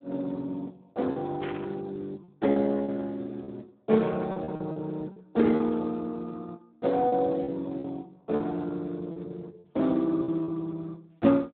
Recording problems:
phone line; 190 Hz to 2.8 kHz, Speex
packet loss; 7% of the sound replaced, filled with repeated pitch periods
burst of static; at 1.5 s; peak -6 dB vs average level

